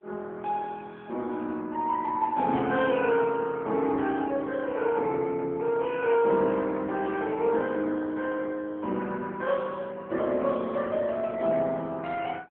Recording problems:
telephone audio; 190 Hz to 3.3 kHz, AMR-NB

